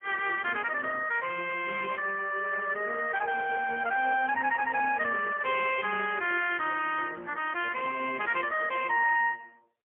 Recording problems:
telephone audio; 280 Hz to 3.1 kHz, AMR-NB, then MP3

